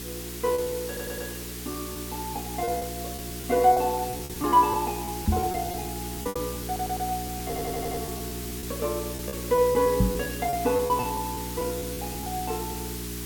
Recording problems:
electrical hum; 60 Hz, harmonics up to 420 Hz, SNR 9 dB
background hiss; slope +1 dB per octave, SNR 8 dB
packet loss; 11% of the sound replaced, filled with repeated pitch periods
stutter; at 1 s, at 6.5 s and at 7.5 s
knock on the microphone; at 5.5 s and at 10 s; peak +9 dB vs average level

